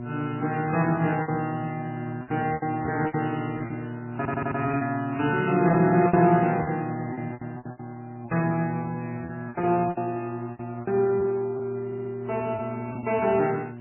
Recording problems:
codec artefacts; MP3, then MP3, log-spectral distance 3 dB, nothing above 2.7 kHz
electrical hum; 60 Hz, harmonics up to 1.1 kHz, SNR 10 dB
lost packets; 11% of the sound replaced, filled with repeated pitch periods
stutter; at 4 s and at 12 s
burst of static; at 7 s; peak -16 dB vs average level

